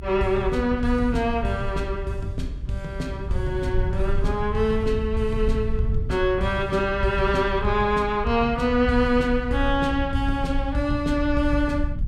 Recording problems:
low-frequency rumble; below 76 Hz, SNR 7 dB

